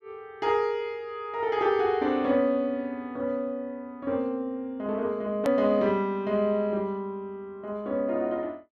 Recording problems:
click at an edit; at 5.5 s

